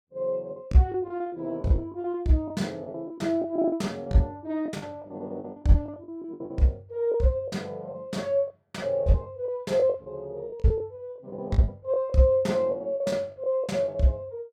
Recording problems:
packet loss; 13% of the sound replaced, filled with the last packet

